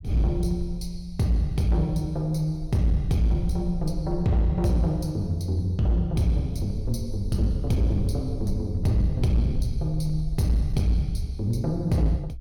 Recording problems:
distortion; hard clipping, signal-to-distortion ratio 11 dB
rumble; below 62 Hz, SNR 11 dB

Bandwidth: 17.5 kHz